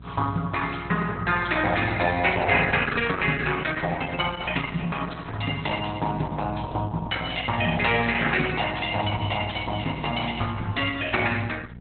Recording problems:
lossy codec; Opus, log-spectral distance 6 dB, nothing above 4 kHz
electrical hum; 60 Hz, harmonics up to 720 Hz, SNR 16 dB

